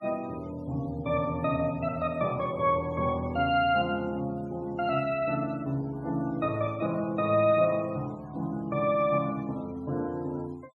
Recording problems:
denoising artefacts; signal-to-artefact ratio 26 dB

